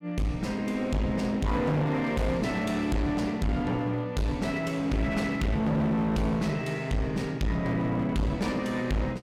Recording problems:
distortion; hard clipping, uneven, signal-to-distortion ratio 6 dB

